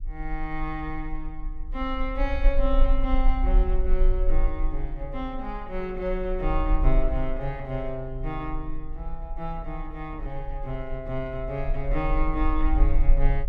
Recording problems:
rumble; below 38 Hz, strongest tone 22 Hz, SNR -2 dB

